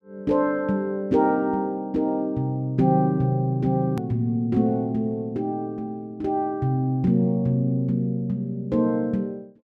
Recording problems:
click at an edit; at 4 s

